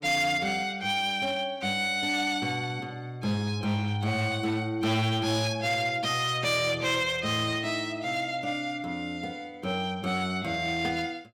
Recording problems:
distorted audio; hard clipping, uneven, signal-to-distortion ratio 12 dB

